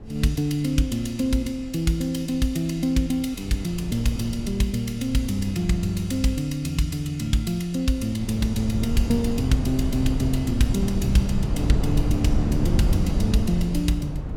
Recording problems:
wind on the microphone; below 150 Hz, SNR 3 dB

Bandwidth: 17 kHz